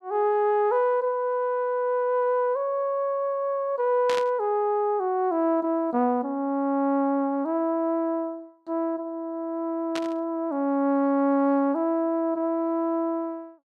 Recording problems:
burst of static; at 4 s and at 10 s; peak -3 dB vs average level

